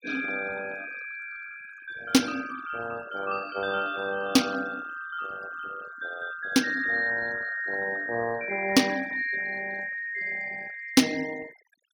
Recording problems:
denoising artefacts; signal-to-artefact ratio 15 dB

